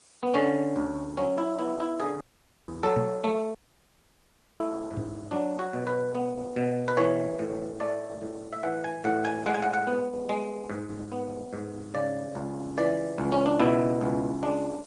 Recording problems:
codec artefacts; Opus, then MP3, log-spectral distance 7 dB
background hiss; SNR 27 dB
dropout; at 2 s and at 3.5 s for 1 s
microphone bump; at 3 s and at 5 s; peak +1 dB vs average level

